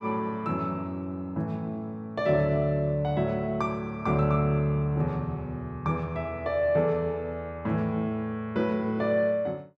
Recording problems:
none

